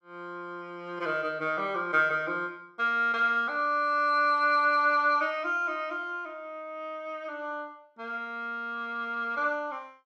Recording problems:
none

